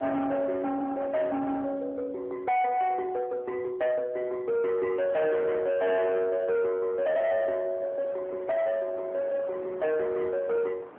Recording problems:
phone line; 820 Hz to 2.1 kHz, AMR-NB
distorted audio; soft clipping, signal-to-distortion ratio 7 dB
wind on the microphone; below 1.1 kHz, SNR 20 dB

